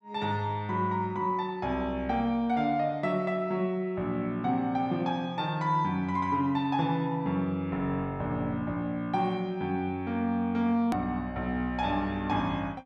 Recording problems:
edit click; at 11 s

